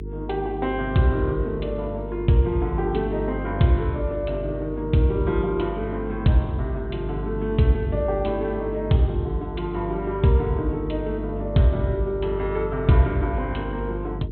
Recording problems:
treble cut off; nothing above 4 kHz
hum; 50 Hz, harmonics up to 450 Hz, SNR 8 dB

